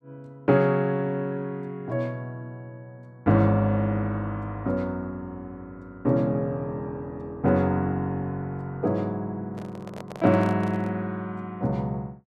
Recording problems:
handling noise; from 9.5 to 11 s; peak -9 dB vs average level

